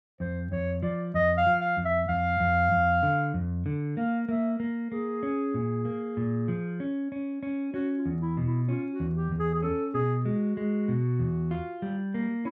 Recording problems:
none

